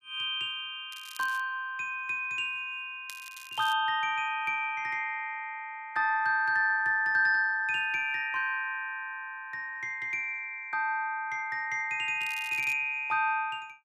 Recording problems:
crackle; at 1 s, at 3 s and at 12 s; loose cable, SNR 19 dB

